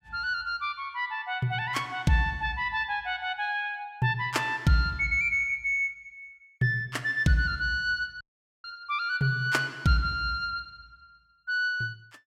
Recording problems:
dropout; at 8 s

